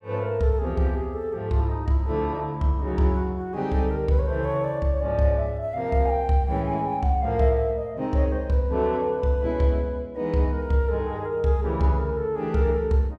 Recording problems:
none

